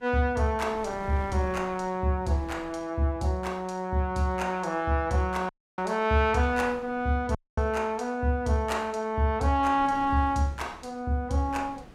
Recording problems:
wind on the microphone; below 570 Hz, SNR 21 dB
audio cutting out; at 5.5 s and at 7.5 s

